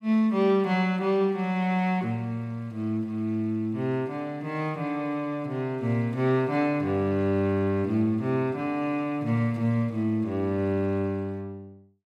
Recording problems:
none

